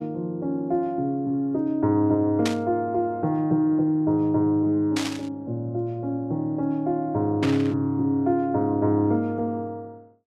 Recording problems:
static burst; at 2.5 s, at 5 s and at 7.5 s; peak -1 dB vs average level

